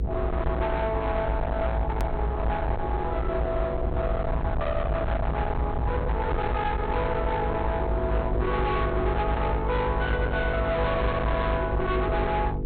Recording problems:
treble missing; nothing above 4.2 kHz
distorted audio; hard clipping, uneven, signal-to-distortion ratio 6 dB
hum; 50 Hz, harmonics up to 500 Hz, SNR 7 dB
rumble; below 370 Hz, SNR 3 dB
edit click; at 2 s

